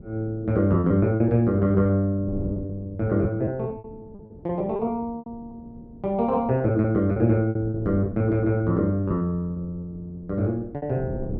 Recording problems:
wind noise; below 290 Hz, SNR 17 dB
packet loss; 12% of the sound replaced, filled with repeated pitch periods

